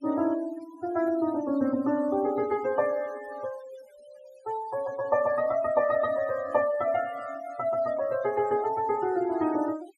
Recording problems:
denoising artefacts; signal-to-artefact ratio 19 dB

